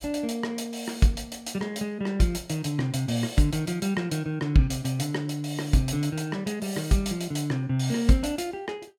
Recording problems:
none

